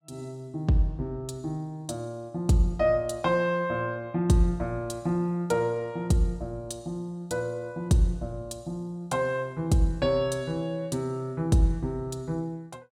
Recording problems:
none

